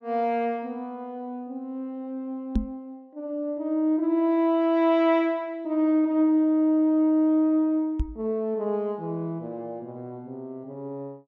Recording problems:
microphone bump; at 2.5 s and at 8 s; peak +3 dB vs average level

